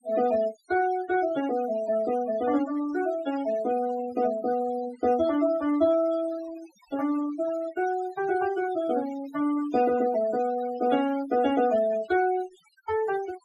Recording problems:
denoising artefacts; signal-to-artefact ratio 16 dB

